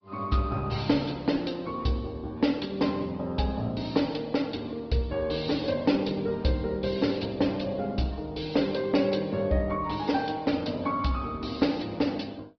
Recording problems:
treble cut off; nothing above 5.2 kHz
lossy codec; Opus, log-spectral distance 4 dB

